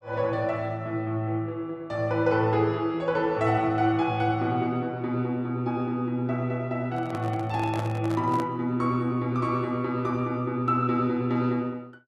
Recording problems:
microphone handling noise; from 7 to 8.5 s; peak -5 dB vs average level

